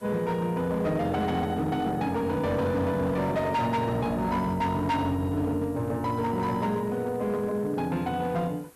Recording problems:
distorted audio; hard clipping, signal-to-distortion ratio 12 dB
background hiss; slope -4 dB per octave, SNR 27 dB

